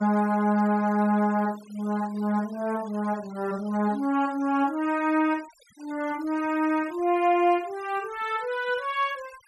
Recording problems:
noise reduction artefacts; signal-to-artefact ratio 23 dB

